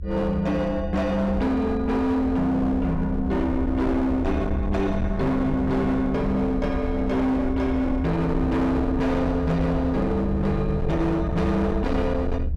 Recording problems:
distortion; hard clipping, signal-to-distortion ratio 8 dB
rumble; below 120 Hz, SNR 6 dB

